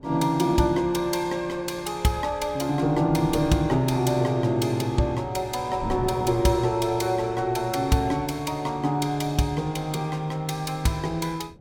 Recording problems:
wind on the microphone; below 270 Hz, SNR 18 dB

